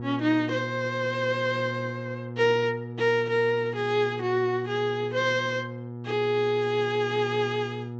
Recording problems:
treble cut off; nothing above 7.7 kHz
hum; 60 Hz, harmonics up to 960 Hz, SNR 10 dB

